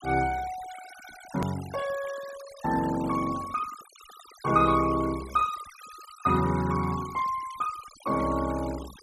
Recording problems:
noise reduction artefacts; signal-to-artefact ratio 16 dB
edit click; at 1.5 s

